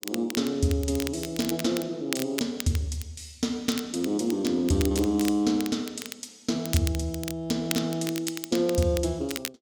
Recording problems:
crackle; vinyl, SNR 10 dB

